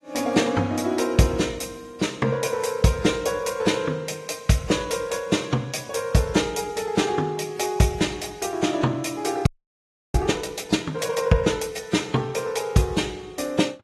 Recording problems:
codec artefacts; AAC, log-spectral distance 4 dB
frozen audio; at 9.5 s for 0.5 s

